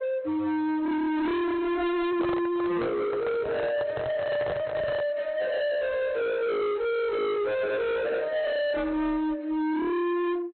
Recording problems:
low-pass filter; nothing above 4.1 kHz
lossy compression; AAC, log-spectral distance 2 dB
distorted audio; hard clipping, signal-to-distortion ratio 6 dB
handling noise; from 2 to 5 s; peak -1 dB vs average level

